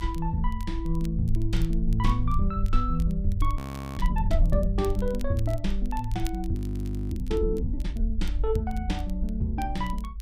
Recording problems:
rumble; below 50 Hz, SNR 2 dB
crackle; vinyl, SNR 22 dB
frozen audio; at 3.5 s and at 6.5 s for 0.5 s

